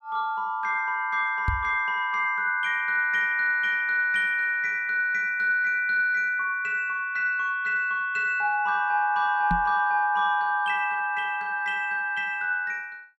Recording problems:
microphone thump; at 1.5 s and at 9.5 s; peak +1 dB vs average level

